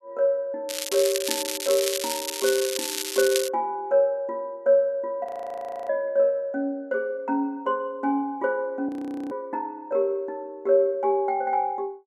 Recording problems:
crackling; from 0.5 to 3.5 s; loose cable, SNR 3 dB
frozen audio; at 5.5 s for 0.5 s and at 9 s

